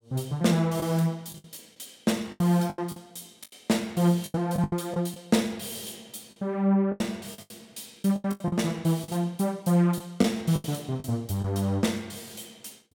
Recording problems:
packet loss; 11% of the sound replaced, filled with the last packet

